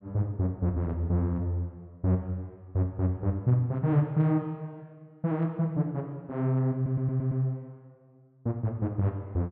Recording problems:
stutter; at 7 s

